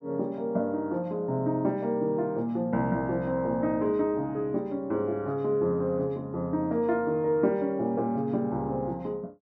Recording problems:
none

